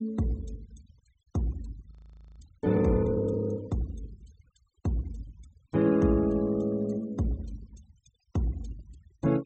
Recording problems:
treble cut off; nothing above 8 kHz
denoising artefacts; signal-to-artefact ratio 25 dB
audio freezing; at 2 s

